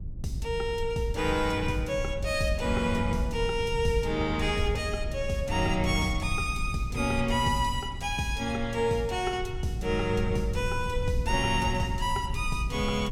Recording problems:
rumble; below 98 Hz, SNR 7 dB

